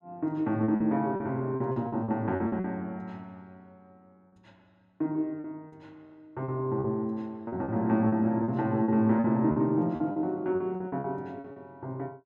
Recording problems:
lost packets; 11% of the sound replaced, filled with repeated pitch periods

